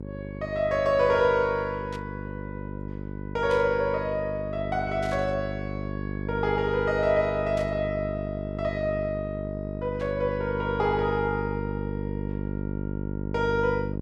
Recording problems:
hum; 50 Hz, harmonics up to 650 Hz, SNR 6 dB
burst of static; 5 times, first at 2 s; peak -11 dB vs average level

